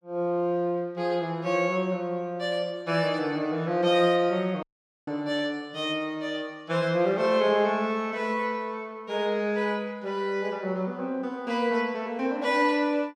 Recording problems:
audio cutting out; at 4.5 s

